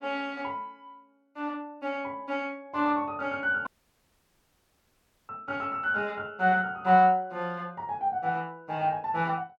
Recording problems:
dropout; at 3.5 s for 1.5 s

